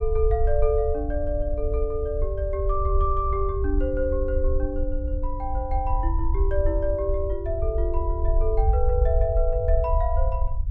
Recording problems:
rumble; below 64 Hz, SNR 0 dB

